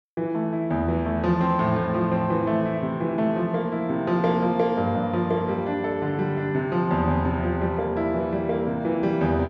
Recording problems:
none

